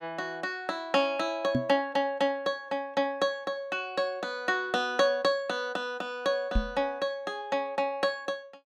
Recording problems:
knock on the microphone; at 1.5 s and at 6.5 s; peak +5 dB vs average level

